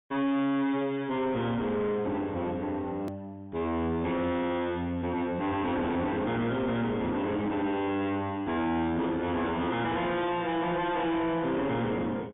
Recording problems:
treble missing; nothing above 3.6 kHz
distorted audio; soft clipping, signal-to-distortion ratio 6 dB
edit click; at 3 s

